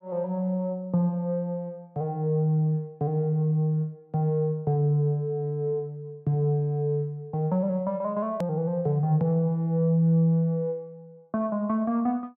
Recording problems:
hard cut with a click; at 8.5 s

